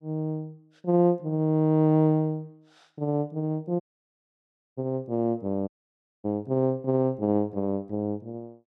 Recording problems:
dropout; at 4 s for 1 s and at 5.5 s for 0.5 s

